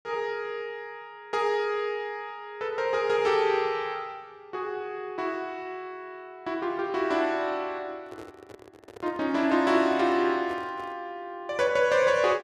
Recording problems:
handling noise; from 8 to 11 s; peak -11 dB vs average level

